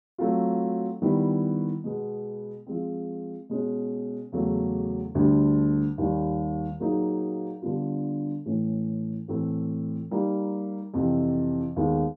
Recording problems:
none

